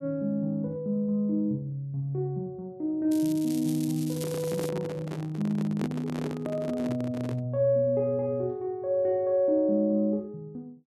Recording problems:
crackling; from 3 to 4.5 s; loose cable, SNR 14 dB
handling noise; from 4 to 7.5 s; peak -3 dB vs average level

